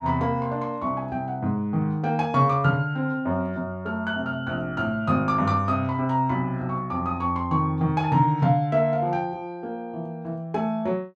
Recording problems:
none

